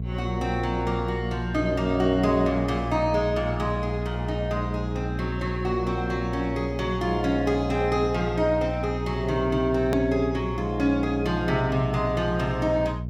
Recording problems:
electrical hum; 60 Hz, harmonics up to 480 Hz, SNR 6 dB
hard cut with a click; at 10 s

